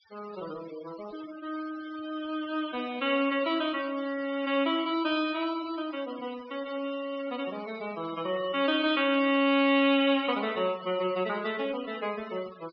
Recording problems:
treble missing; nothing above 5.5 kHz
denoising artefacts; signal-to-artefact ratio 18 dB

